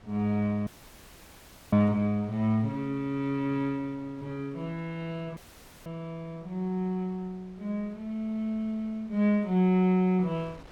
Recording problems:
wind on the microphone; below 1.1 kHz, SNR 27 dB
audio cutting out; at 0.5 s for 1 s and at 5.5 s

